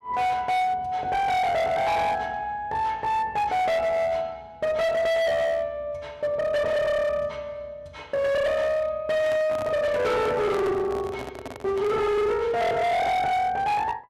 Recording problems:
distortion; hard clipping, signal-to-distortion ratio 7 dB
microphone handling noise; from 9 to 12 s; peak -6 dB vs average level

